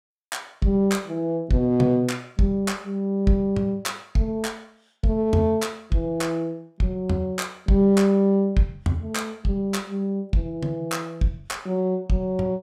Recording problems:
none

